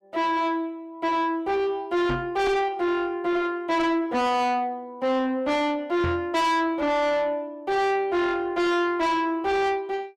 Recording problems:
distortion; soft clipping, signal-to-distortion ratio 7 dB
microphone thump; at 2 s and at 6 s; peak +1 dB vs average level

